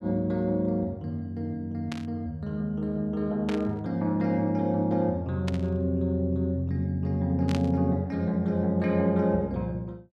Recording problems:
static burst; 4 times, first at 2 s; peak -5 dB vs average level

